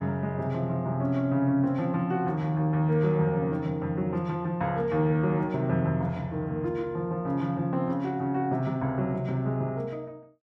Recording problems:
none

